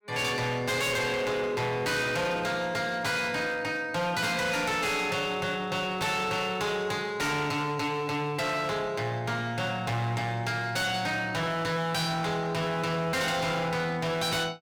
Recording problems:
distorted audio; hard clipping, signal-to-distortion ratio 7 dB

